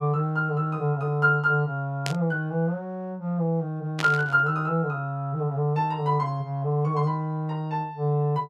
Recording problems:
burst of static; at 2 s and at 4 s; peak -1 dB vs average level

